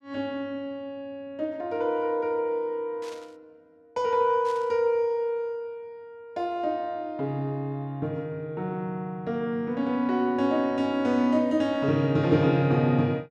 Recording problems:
burst of static; at 3 s and at 4.5 s; peak -15 dB vs average level

